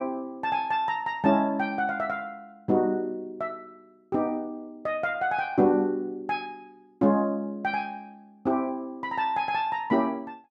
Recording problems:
none

